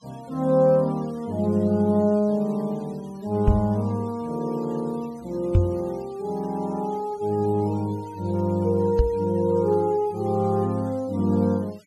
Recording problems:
denoising artefacts; signal-to-artefact ratio 27 dB
knock on the microphone; at 3.5 s, at 5.5 s and at 9 s; peak +8 dB vs average level

